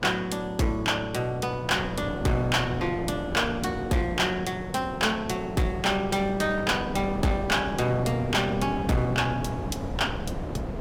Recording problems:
distortion; hard clipping, uneven, signal-to-distortion ratio 10 dB
wind on the microphone; below 500 Hz, SNR 9 dB

